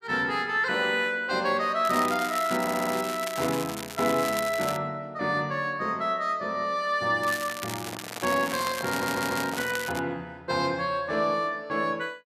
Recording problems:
crackling; from 2 to 5 s and from 7 to 10 s; loose cable, SNR 9 dB
audio stuttering; at 2.5 s and at 9 s
microphone handling noise; from 8 to 10 s; peak -6 dB vs average level

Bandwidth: 14.5 kHz